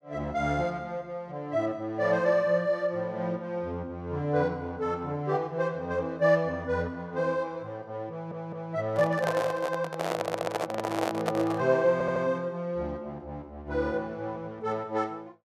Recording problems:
stutter; at 8 s, at 10 s and at 12 s
handling noise; from 9 to 12 s; peak +4 dB vs average level

